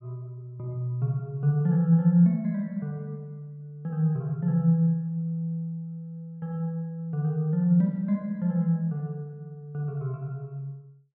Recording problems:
none

